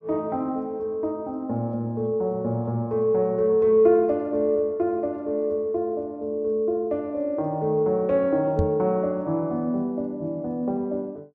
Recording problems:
microphone bump; at 8.5 s; peak +3 dB vs average level

